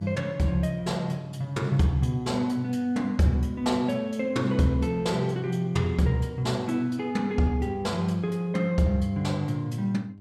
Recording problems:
hum; 50 Hz, harmonics up to 700 Hz, SNR 23 dB

